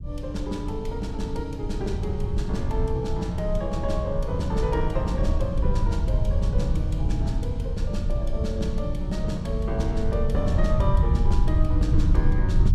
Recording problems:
rumble; below 88 Hz, SNR -3 dB

